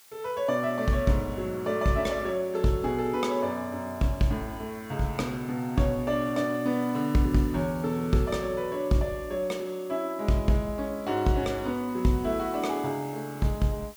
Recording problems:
background hiss; slope +1 dB per octave, SNR 22 dB

